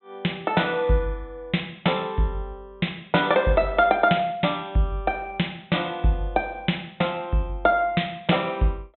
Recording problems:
treble cut off; nothing above 3.8 kHz

